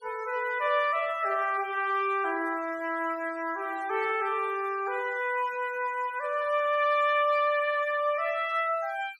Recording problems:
noise reduction artefacts; signal-to-artefact ratio 22 dB

